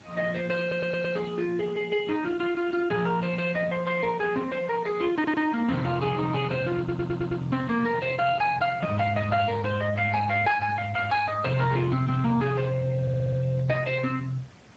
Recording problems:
lossy codec; Speex, log-spectral distance 4 dB
background hiss; slope -4 dB per octave, SNR 26 dB
audio stuttering; 4 times, first at 0.5 s

